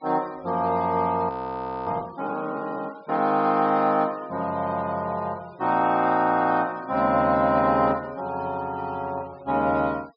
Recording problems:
treble cut off; nothing above 5.5 kHz
noise reduction artefacts; signal-to-artefact ratio 26 dB
audio freezing; at 1.5 s for 0.5 s

